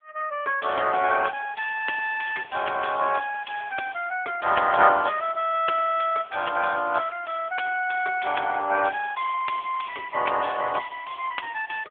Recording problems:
phone line; 300 Hz to 3.4 kHz, AMR-NB

